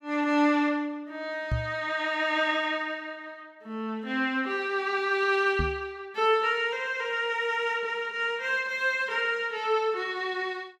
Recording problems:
knock on the microphone; at 1.5 s and at 5.5 s; peak +2 dB vs average level

